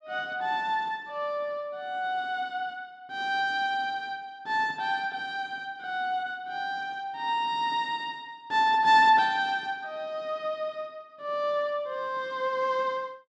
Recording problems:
none

